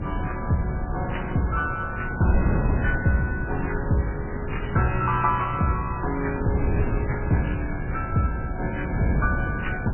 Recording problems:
lossy compression; MP3, log-spectral distance 5 dB, nothing above 2.7 kHz
wind noise; below 190 Hz, SNR 3 dB
crackle; 4 times, first at 3 s; loose cable, SNR 16 dB

